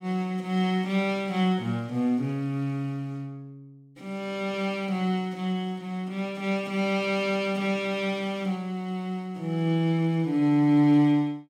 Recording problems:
none

